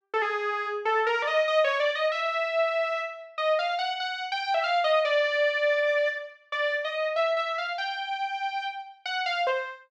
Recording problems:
none

